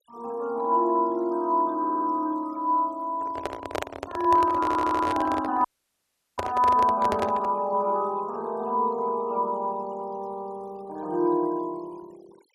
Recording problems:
denoising artefacts; signal-to-artefact ratio 26 dB
audio stuttering; at 2 s and at 4.5 s
microphone handling noise; from 3 to 7.5 s; peak 0 dB vs average level
dropout; at 5.5 s for 0.5 s

